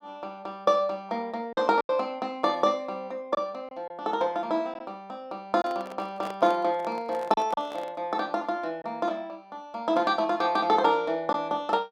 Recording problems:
packet loss; 3% of the sound replaced, filled with silence
microphone handling noise; from 5.5 to 8 s; peak -7 dB vs average level

